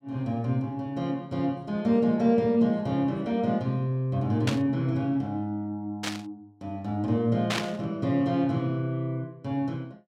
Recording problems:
burst of static; at 4.5 s, at 6 s and at 7.5 s; peak +2 dB vs average level

